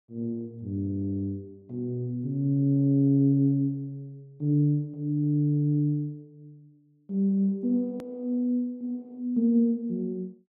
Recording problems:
edit click; at 8 s

